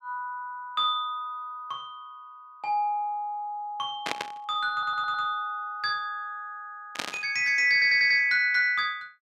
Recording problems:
static burst; at 4 s and at 7 s; peak 0 dB vs average level
audio stuttering; at 4.5 s and at 7.5 s

